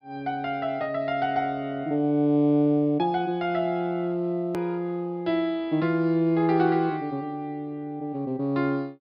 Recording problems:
treble cut off; nothing above 5.5 kHz
click at an edit; at 4.5 s

